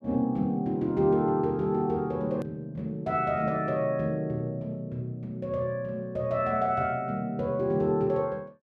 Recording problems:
edit click; at 2.5 s

